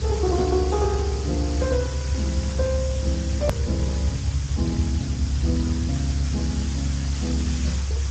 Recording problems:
lossy codec; Speex, log-spectral distance 6 dB, nothing above 13.1 kHz
background hiss; slope +3 dB per octave, SNR 8 dB
low-frequency rumble; below 92 Hz, strongest tone 68 Hz, SNR -1 dB
edit click; at 3.5 s

